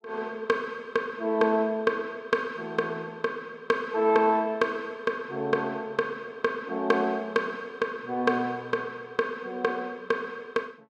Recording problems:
none

